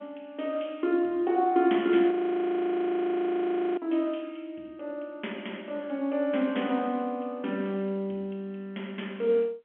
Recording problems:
phone line; 220 Hz to 3.4 kHz, G.711
audio freezing; at 2 s for 1.5 s

